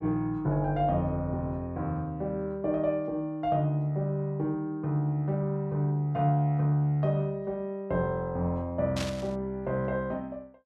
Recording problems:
burst of static; at 9 s; peak -2 dB vs average level

